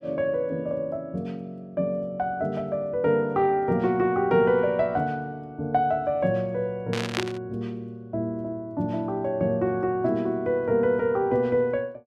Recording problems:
burst of static; at 7 s; peak +2 dB vs average level

